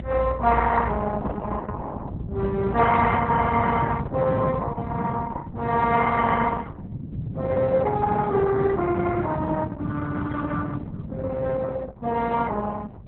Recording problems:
codec artefacts; Opus, then Opus, log-spectral distance 4 dB
rumble; below 170 Hz, SNR 4 dB

